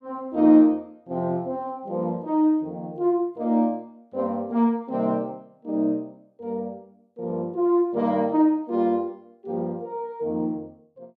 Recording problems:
none

